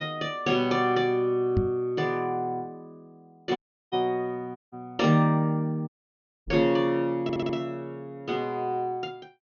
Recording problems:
low-pass filter; nothing above 6.6 kHz
microphone thump; at 1.5 s and at 6.5 s; peak +5 dB vs average level
dropout; at 3.5 s, at 4.5 s and at 6 s for 0.5 s
stutter; at 7 s

